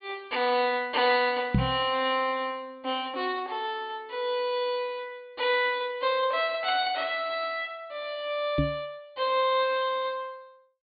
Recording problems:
treble cut off; nothing above 4.6 kHz
microphone bump; at 1.5 s and at 8.5 s; peak +7 dB vs average level

